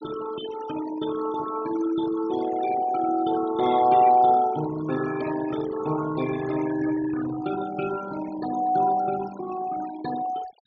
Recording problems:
treble missing; nothing above 6.7 kHz
noise reduction artefacts; signal-to-artefact ratio 12 dB

